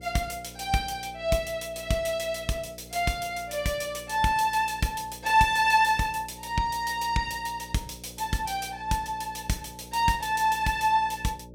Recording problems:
electrical hum; 60 Hz, harmonics up to 600 Hz, SNR 21 dB

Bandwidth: 16.5 kHz